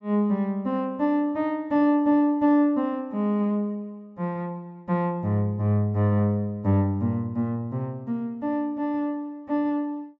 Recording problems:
treble cut off; nothing above 8 kHz

